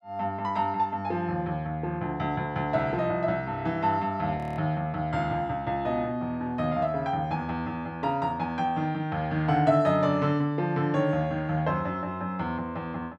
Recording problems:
frozen audio; at 4.5 s

